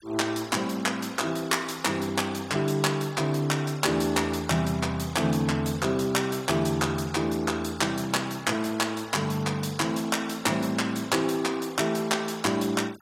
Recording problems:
denoising artefacts; signal-to-artefact ratio 21 dB

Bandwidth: 16 kHz